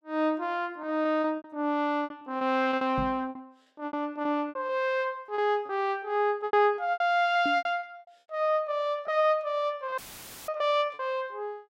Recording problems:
packet loss; 14% of the sound replaced, filled with repeated pitch periods
knock on the microphone; at 3 s and at 7.5 s; peak -3 dB vs average level
dropout; at 10 s for 0.5 s; filled with static

